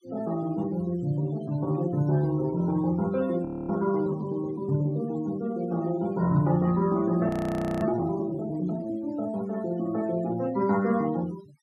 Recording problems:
denoising artefacts; signal-to-artefact ratio 20 dB
frozen audio; at 3.5 s and at 7.5 s for 0.5 s

